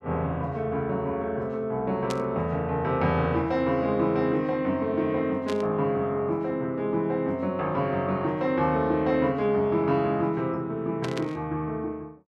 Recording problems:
burst of static; at 2 s, at 5.5 s and at 11 s; peak -5 dB vs average level

